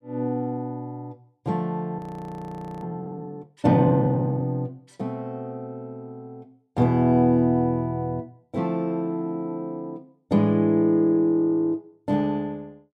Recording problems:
audio freezing; at 2 s for 1 s

